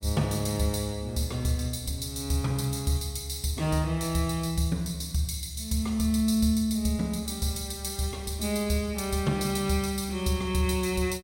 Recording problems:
none

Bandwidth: 16.5 kHz